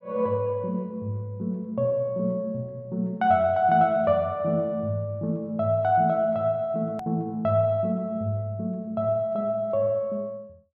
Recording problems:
click at an edit; at 7 s

